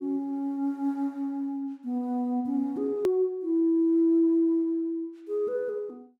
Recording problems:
edit click; at 3 s

